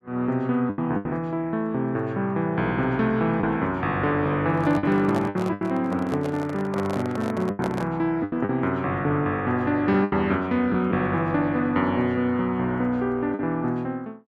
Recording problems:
packet loss; 5% of the sound replaced, filled with the last packet
microphone handling noise; from 4.5 to 8 s; peak -4 dB vs average level

